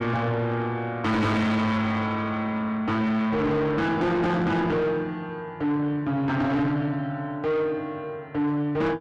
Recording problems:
distortion; soft clipping, signal-to-distortion ratio 7 dB

